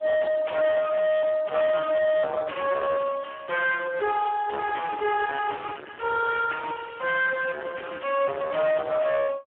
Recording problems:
phone line; 260 Hz to 2.8 kHz, Speex
distortion; soft clipping, signal-to-distortion ratio 5 dB

